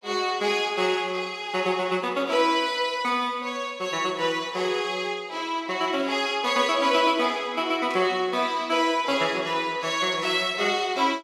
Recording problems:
burst of static; at 8 s; peak -12 dB vs average level

